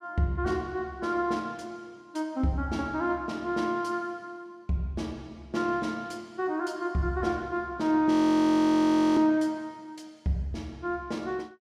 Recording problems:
frozen audio; at 8 s for 1 s

